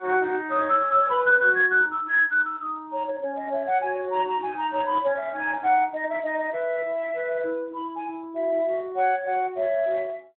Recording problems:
phone line; 300 Hz to 3.7 kHz, Speex

